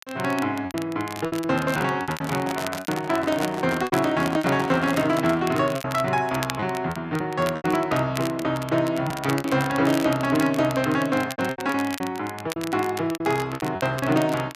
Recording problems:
crackle; vinyl, SNR 14 dB
packet loss; 11% of the sound replaced, filled with repeated pitch periods
handling noise; from 2 to 5.5 s; peak -4 dB vs average level

